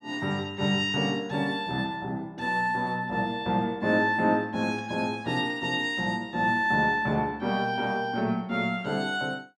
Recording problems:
none

